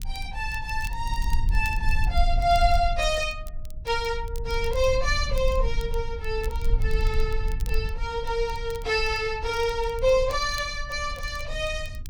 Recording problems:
low-frequency rumble; below 52 Hz, SNR 5 dB
crackling; vinyl, SNR 22 dB

